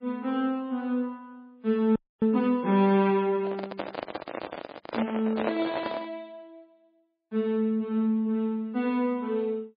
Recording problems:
codec artefacts; MP3, log-spectral distance 2 dB, nothing above 10.7 kHz
audio freezing; at 2 s
handling noise; from 3.5 to 6 s; peak +3 dB vs average level

